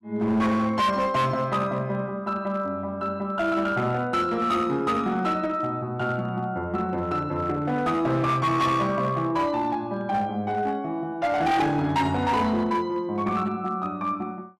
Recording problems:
distorted audio; hard clipping, uneven, signal-to-distortion ratio 10 dB

